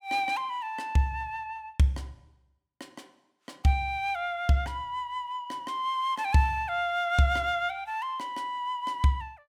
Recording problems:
none

